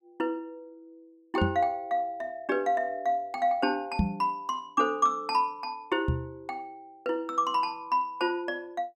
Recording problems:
microphone bump; at 1.5 s, at 4 s and at 6 s; peak +7 dB vs average level

